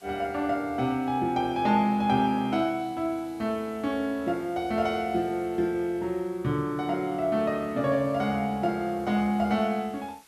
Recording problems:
hiss; slope 0 dB per octave, SNR 28 dB

